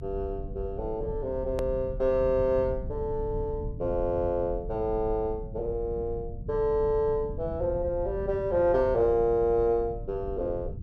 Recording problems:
rumble; below 120 Hz, SNR 11 dB
hard cut with a click; at 1.5 s

